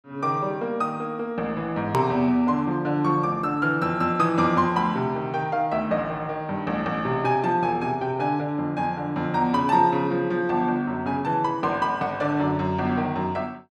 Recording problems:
hard cut with a click; at 2 s

